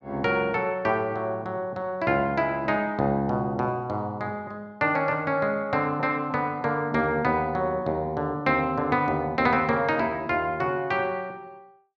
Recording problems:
none

